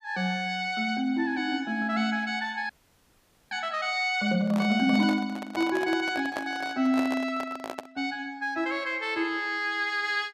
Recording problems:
frozen audio; at 2.5 s for 1 s
handling noise; from 4.5 to 8 s; peak -2 dB vs average level

